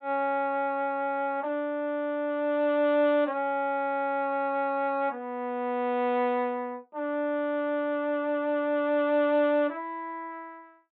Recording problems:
treble cut off; nothing above 4 kHz

